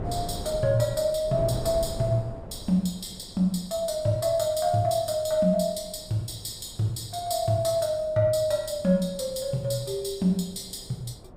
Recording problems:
wind noise; below 430 Hz, SNR 16 dB

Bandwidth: 15.5 kHz